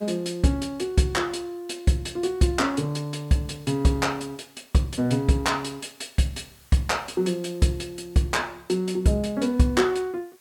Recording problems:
hiss; slope -1 dB per octave, SNR 30 dB

